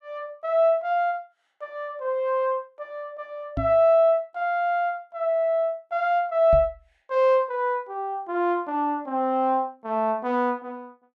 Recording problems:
microphone thump; at 3.5 s and at 6.5 s; peak -1 dB vs average level

